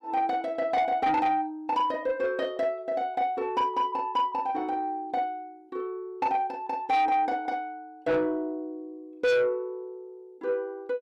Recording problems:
distorted audio; soft clipping, signal-to-distortion ratio 6 dB

